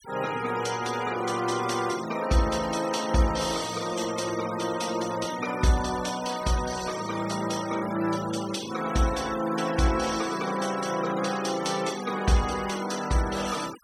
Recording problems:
noise reduction artefacts; signal-to-artefact ratio 13 dB

